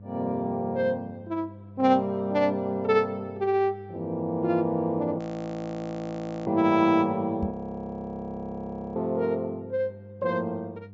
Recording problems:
treble missing; nothing above 8 kHz
electrical hum; 50 Hz, harmonics up to 500 Hz, SNR 19 dB
frozen audio; at 5 s for 1.5 s and at 7.5 s for 1.5 s
microphone bump; at 7.5 s; peak 0 dB vs average level

